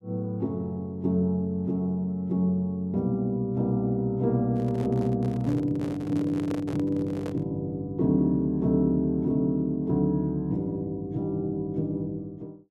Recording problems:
handling noise; from 4.5 to 7.5 s; peak -5 dB vs average level

